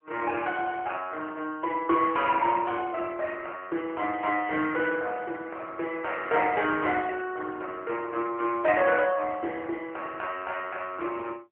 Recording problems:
phone line; 280 Hz to 3.2 kHz, AMR-NB

